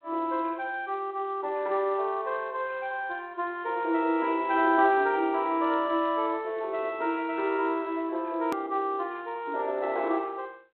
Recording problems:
telephone audio; 280 Hz to 3.9 kHz, G.726
edit click; at 8.5 s

